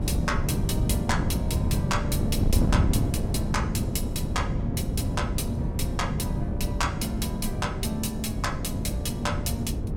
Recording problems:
wind noise; below 200 Hz, SNR -3 dB

